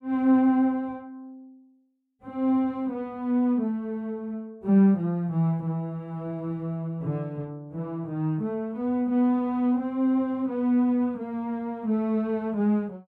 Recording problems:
none

